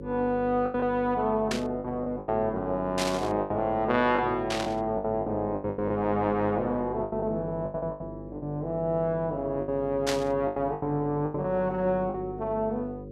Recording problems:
hum; 50 Hz, harmonics up to 550 Hz, SNR 12 dB
packet loss; 10% of the sound replaced, filled with the last packet
burst of static; 4 times, first at 1.5 s; peak +2 dB vs average level

